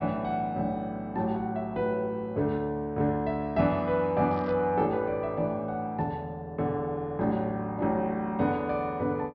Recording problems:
low-pass filter; nothing above 5.5 kHz
crackling; at 4.5 s; loose cable, SNR 30 dB

